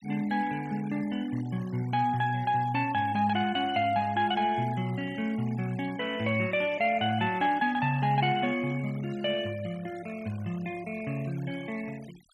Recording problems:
noise reduction artefacts; signal-to-artefact ratio 21 dB

